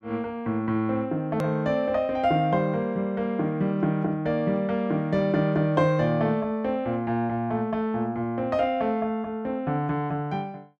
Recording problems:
edit click; at 1.5 s

